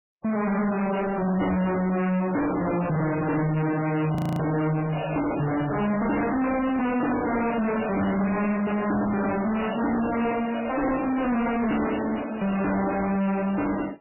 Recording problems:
lossy codec; MP3, log-spectral distance 8 dB, nothing above 18.9 kHz
distorted audio; soft clipping, signal-to-distortion ratio 5 dB
audio freezing; at 4 s

